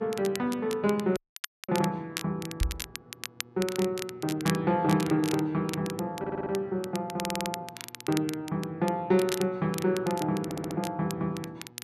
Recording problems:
hum; 60 Hz, harmonics up to 1.7 kHz, SNR 25 dB
crackle; vinyl, SNR 11 dB
audio cutting out; at 1 s for 0.5 s
microphone thump; at 2.5 s; peak +5 dB vs average level
audio stuttering; at 6 s, at 7 s and at 10 s

